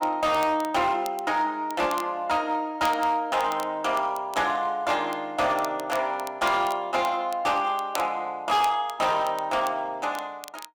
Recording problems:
distortion; hard clipping, signal-to-distortion ratio 12 dB
crackle; vinyl, SNR 19 dB

